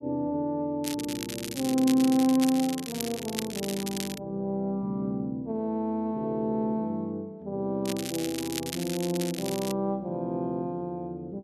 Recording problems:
crackling; from 1 to 2.5 s, from 2.5 to 4 s and from 8 to 9.5 s; loose cable, SNR 8 dB

